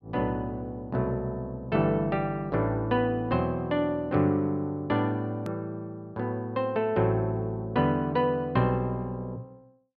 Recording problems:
click at an edit; at 5.5 s

